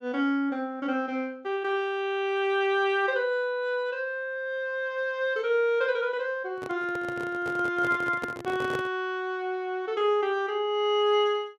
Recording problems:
microphone handling noise; from 6.5 to 9 s; peak -2 dB vs average level

